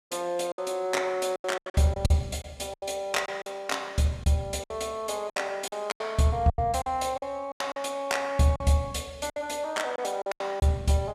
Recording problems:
lost packets; 12% of the sound replaced, filled with silence

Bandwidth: 14.5 kHz